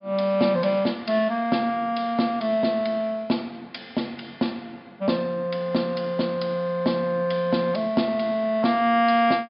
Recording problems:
low-pass filter; nothing above 5.5 kHz

